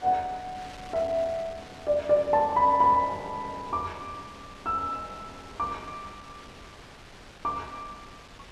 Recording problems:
wind noise; below 3.1 kHz, SNR 19 dB

